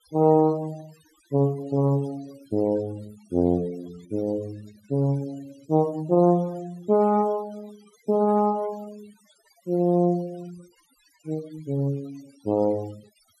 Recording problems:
noise reduction artefacts; signal-to-artefact ratio 25 dB

